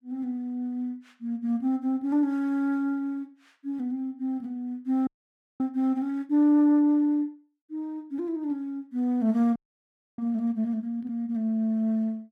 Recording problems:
audio freezing; at 5 s for 0.5 s and at 9.5 s for 0.5 s

